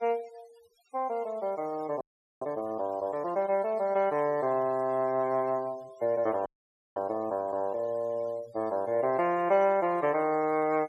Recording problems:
noise reduction artefacts; signal-to-artefact ratio 25 dB
audio freezing; at 2 s and at 6.5 s for 0.5 s

